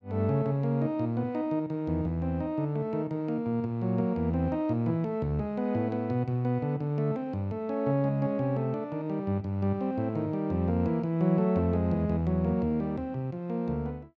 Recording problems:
none

